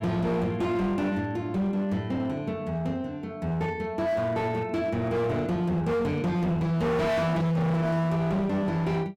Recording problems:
distortion; hard clipping, signal-to-distortion ratio 7 dB

